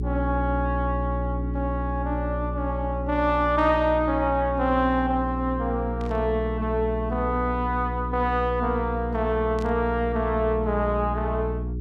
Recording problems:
electrical hum; 60 Hz, harmonics up to 420 Hz, SNR 5 dB
static burst; at 6 s and at 9.5 s; peak -15 dB vs average level

